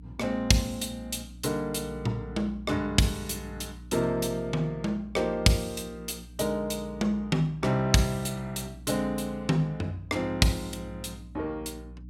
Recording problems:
hum; 60 Hz, harmonics up to 300 Hz, SNR 17 dB

